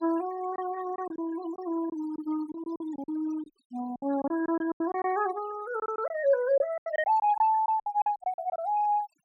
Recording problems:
noise reduction artefacts; signal-to-artefact ratio 19 dB
packet loss; 12% of the sound replaced, filled with silence

